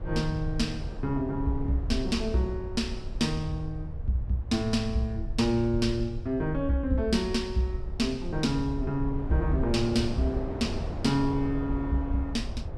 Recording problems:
rumble; below 82 Hz, SNR 8 dB
wind noise; below 570 Hz, SNR 13 dB

